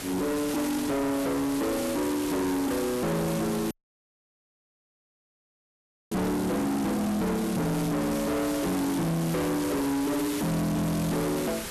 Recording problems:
distortion; soft clipping, signal-to-distortion ratio 6 dB
background hiss; slope -2 dB per octave, SNR 8 dB
audio cutting out; at 3.5 s for 2.5 s

